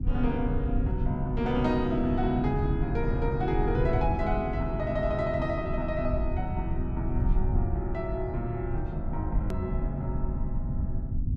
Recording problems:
hum; 50 Hz, harmonics up to 300 Hz, SNR 9 dB
rumble; below 88 Hz, SNR 2 dB
click at an edit; at 9.5 s

